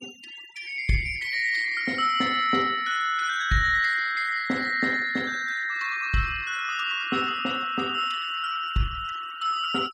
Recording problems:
denoising artefacts; signal-to-artefact ratio 19 dB

